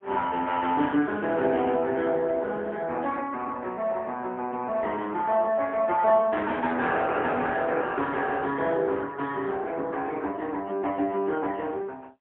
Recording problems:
phone line; 220 Hz to 3.4 kHz, AMR-NB, then MP3

